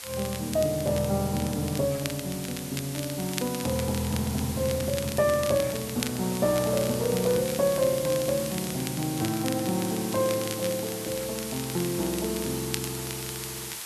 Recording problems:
hiss; SNR 8 dB
crackling; vinyl, SNR 12 dB
handling noise; from 4 to 7.5 s; peak -8 dB vs average level

